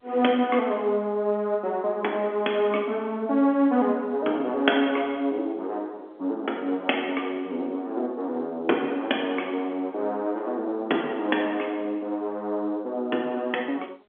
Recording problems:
telephone audio; 220 Hz to 3.6 kHz, G.711

